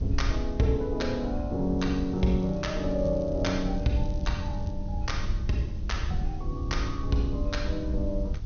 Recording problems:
treble missing; nothing above 6.5 kHz
background hiss; SNR 28 dB
wind on the microphone; below 80 Hz, SNR 4 dB
crackle; from 2 to 4.5 s; loose cable, SNR 28 dB

